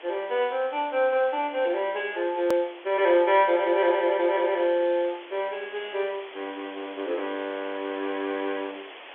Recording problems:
phone line; 260 Hz to 3.5 kHz, G.711
background hiss; SNR 18 dB
edit click; at 2.5 s

